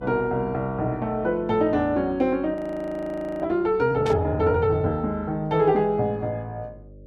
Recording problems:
hum; 50 Hz, harmonics up to 600 Hz, SNR 23 dB
audio freezing; at 2.5 s for 1 s
static burst; at 4 s; peak -8 dB vs average level

